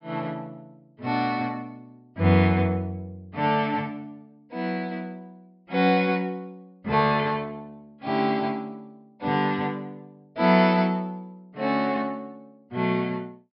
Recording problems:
treble cut off; nothing above 5.3 kHz

